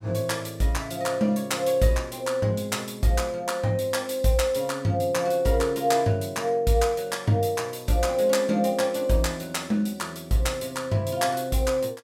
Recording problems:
none

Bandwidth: 16 kHz